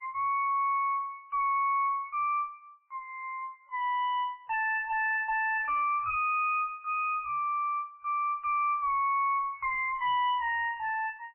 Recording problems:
lossy codec; MP3, log-spectral distance 3 dB, nothing above 2.5 kHz
distorted audio; soft clipping, signal-to-distortion ratio 5 dB

